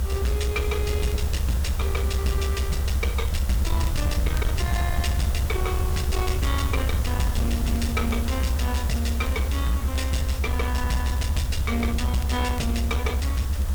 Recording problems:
distortion; soft clipping, signal-to-distortion ratio 11 dB
background hiss; SNR 9 dB
rumble; below 80 Hz, SNR -2 dB
crackle; vinyl, SNR 24 dB

